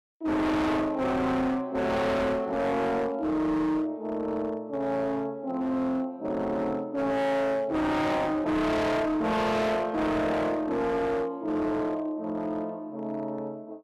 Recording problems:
distorted audio; hard clipping, signal-to-distortion ratio 6 dB

